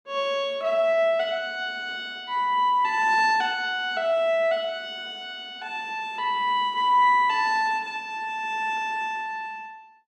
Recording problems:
none

